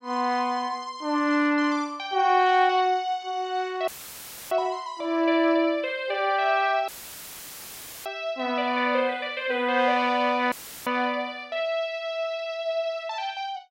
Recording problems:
dropout; at 4 s for 0.5 s, at 7 s for 1 s and at 11 s; filled with static

